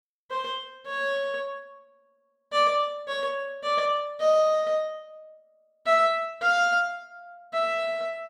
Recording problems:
none

